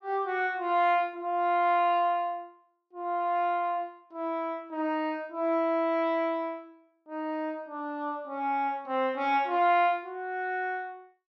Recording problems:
none

